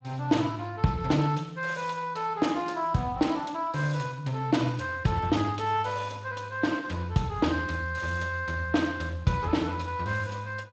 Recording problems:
codec artefacts; Speex, log-spectral distance 4 dB, nothing above 7.3 kHz

